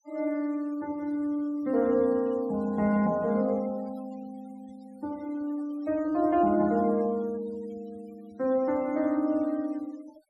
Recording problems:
denoising artefacts; signal-to-artefact ratio 25 dB

